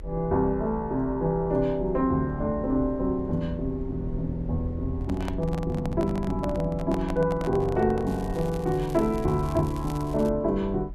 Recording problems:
rumble; below 76 Hz, SNR 12 dB
handling noise; from 5 to 8.5 s; peak -5 dB vs average level
crackle; from 8 to 10 s; loose cable, SNR 22 dB

